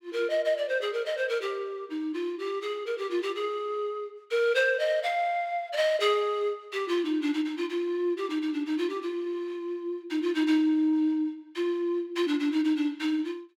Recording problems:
none

